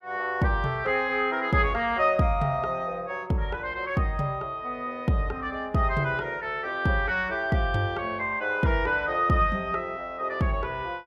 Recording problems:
none

